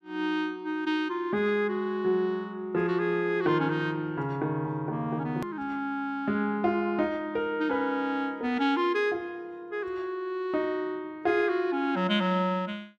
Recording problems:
click at an edit; at 5.5 s

